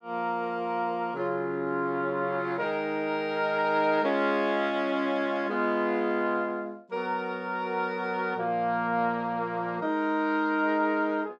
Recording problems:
none

